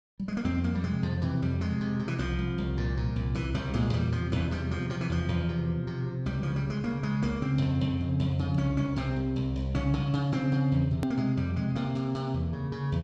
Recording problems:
hard cut with a click; at 11 s

